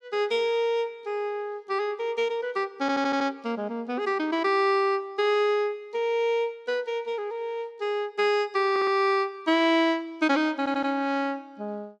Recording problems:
audio stuttering; at 3 s, at 8.5 s and at 11 s

